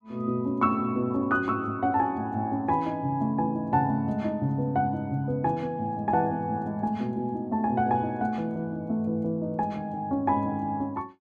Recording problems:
none

